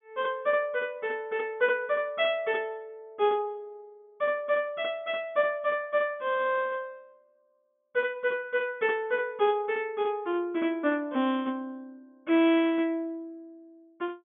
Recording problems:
low-pass filter; nothing above 3.5 kHz

